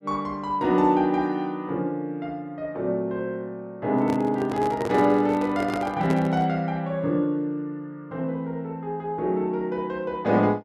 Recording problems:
handling noise; from 4 to 6.5 s; peak 0 dB vs average level

